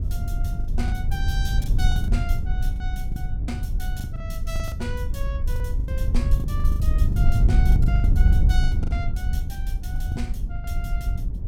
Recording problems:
wind on the microphone; below 78 Hz, SNR -12 dB
packet loss; 12% of the sound replaced, filled with the last packet

